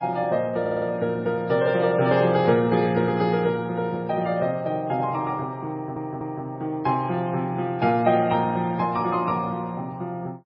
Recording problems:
lossy compression; MP3, log-spectral distance 2 dB, nothing above 4.8 kHz
audio stuttering; at 0.5 s and at 5.5 s

